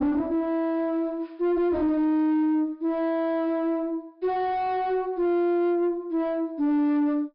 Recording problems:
low-pass filter; nothing above 5.2 kHz
distorted audio; soft clipping, signal-to-distortion ratio 6 dB

